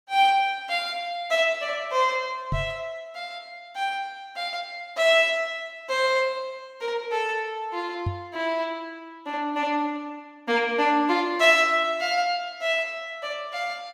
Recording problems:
knock on the microphone; at 2.5 s and at 8 s; peak 0 dB vs average level

